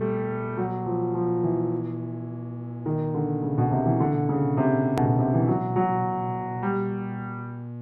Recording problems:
hum; 60 Hz, harmonics up to 840 Hz, SNR 10 dB
hard cut with a click; at 5 s

